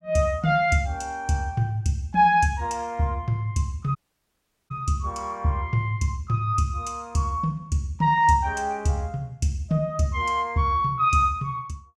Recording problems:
audio cutting out; at 4 s for 1 s

